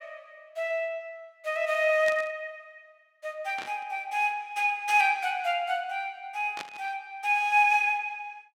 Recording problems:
burst of static; at 2 s, at 3.5 s and at 6.5 s; peak -6 dB vs average level

